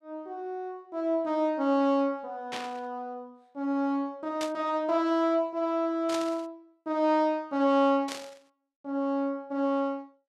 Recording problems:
static burst; 4 times, first at 2.5 s; peak -4 dB vs average level

